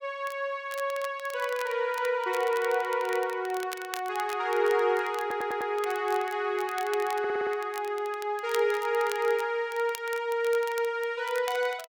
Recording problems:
crackle; vinyl, SNR 16 dB
audio stuttering; at 5 s and at 7 s

